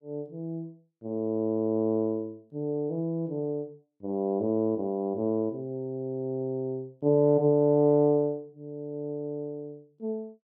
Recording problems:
none

